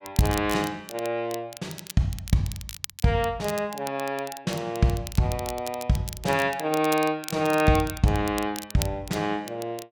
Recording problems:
crackling; vinyl, SNR 13 dB

